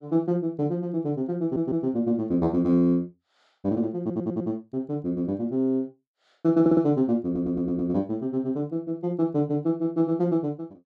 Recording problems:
audio stuttering; 4 times, first at 1.5 s

